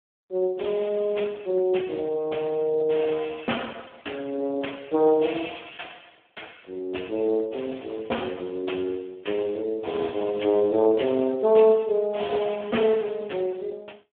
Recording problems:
phone line; 260 Hz to 3.3 kHz, Speex

